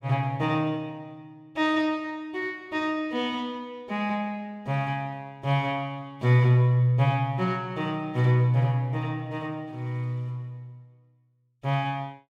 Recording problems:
none

